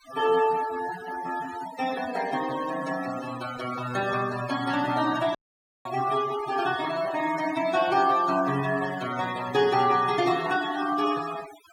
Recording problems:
denoising artefacts; signal-to-artefact ratio 13 dB
dropout; at 5.5 s for 0.5 s

